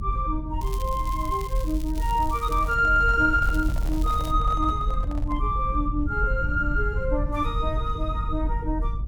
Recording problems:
low-frequency rumble; below 64 Hz, strongest tone 40 Hz, SNR 3 dB
crackle; from 0.5 to 3 s and at 3.5 s; loose cable, SNR 19 dB
handling noise; from 2.5 to 5.5 s; peak -10 dB vs average level

